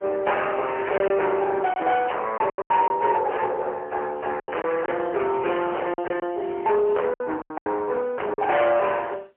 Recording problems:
phone line; 340 Hz to 3.1 kHz, AMR-NB, then MP3
distortion; soft clipping, signal-to-distortion ratio 7 dB
packet loss; 8% of the sound replaced, filled with silence

